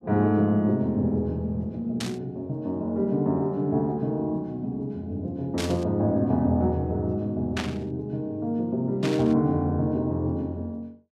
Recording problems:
burst of static; 4 times, first at 2 s; peak -1 dB vs average level

